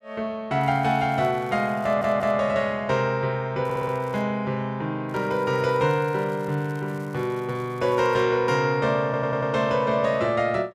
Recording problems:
crackling; from 0.5 to 2.5 s, at 3.5 s and from 5 to 8 s; loose cable, SNR 30 dB
stutter; at 2 s, at 3.5 s and at 9 s

